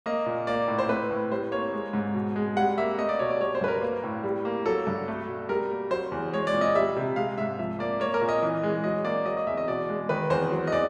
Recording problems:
none

